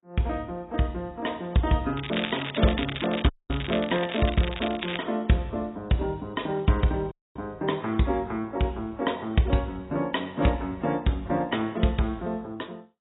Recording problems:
lossy codec; AAC, log-spectral distance 6 dB, nothing above 3.8 kHz
crackling; from 2 to 5 s; loose cable, SNR 7 dB
dropout; at 3.5 s and at 7 s

